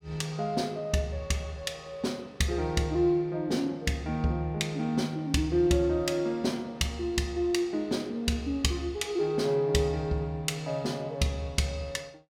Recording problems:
none

